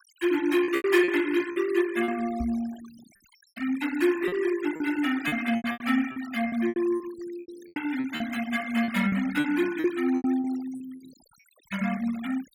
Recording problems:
noise reduction artefacts; signal-to-artefact ratio 16 dB
packet loss; 12% of the sound replaced, filled with repeated pitch periods
microphone thump; at 2.5 s; peak -4 dB vs average level

